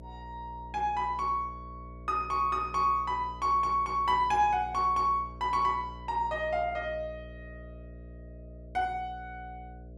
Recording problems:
hum; 60 Hz, harmonics up to 660 Hz, SNR 17 dB

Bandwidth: 14 kHz